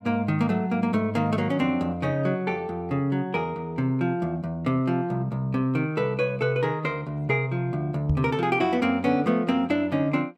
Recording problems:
knock on the microphone; at 8 s; peak +2 dB vs average level

